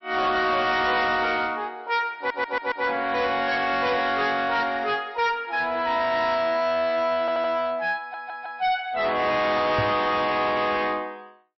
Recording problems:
lossy compression; MP3, log-spectral distance 2 dB, nothing above 5.7 kHz
distorted audio; soft clipping, signal-to-distortion ratio 12 dB
audio stuttering; at 2 s, at 7 s and at 8 s
microphone thump; at 10 s; peak 0 dB vs average level

